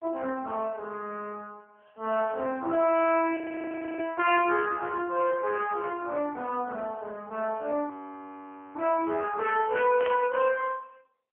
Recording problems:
phone line; 240 Hz to 3.1 kHz, AMR-NB
frozen audio; at 3.5 s for 0.5 s and at 8 s for 1 s
static burst; at 10 s; peak -4 dB vs average level

